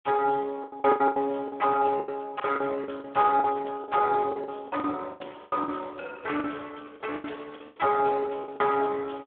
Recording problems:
telephone audio; 260 Hz to 3.4 kHz, Speex
packet loss; 15% of the sound replaced, filled with the last packet

